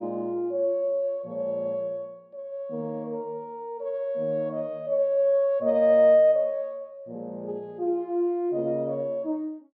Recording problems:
none

